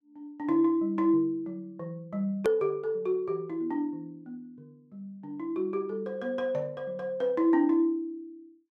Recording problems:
hard cut with a click; at 2.5 s

